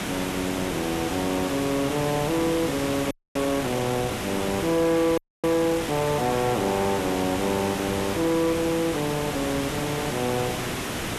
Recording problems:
distortion; soft clipping, signal-to-distortion ratio 11 dB
background hiss; slope -4 dB per octave, SNR 5 dB
audio freezing; at 3 s and at 5 s

